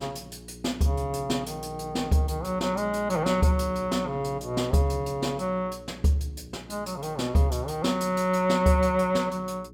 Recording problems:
hum; 60 Hz, harmonics up to 420 Hz, SNR 18 dB

